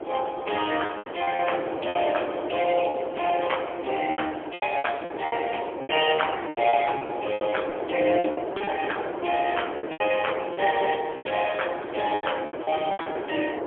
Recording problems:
telephone audio; 260 Hz to 3.3 kHz, AMR-NB, then MP3
wind noise; below 720 Hz, SNR 6 dB
lost packets; 13% of the sound replaced, filled with repeated pitch periods

